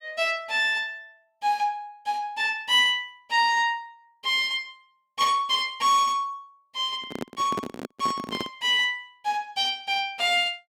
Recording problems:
handling noise; from 7 to 8.5 s; peak -3 dB vs average level

